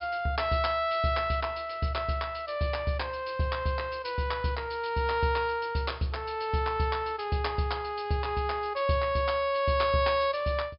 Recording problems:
treble missing; nothing above 5.5 kHz

